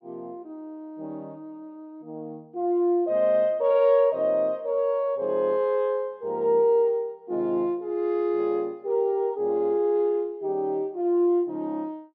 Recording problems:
none

